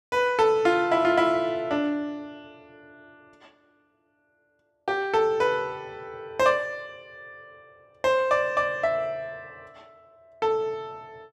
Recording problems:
none

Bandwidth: 13 kHz